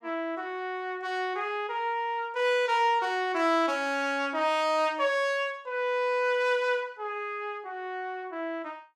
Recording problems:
none

